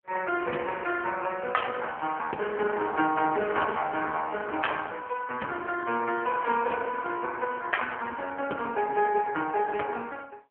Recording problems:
telephone audio; 280 Hz to 3 kHz, AMR-NB

